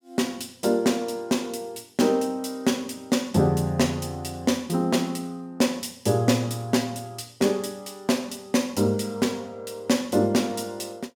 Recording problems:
none

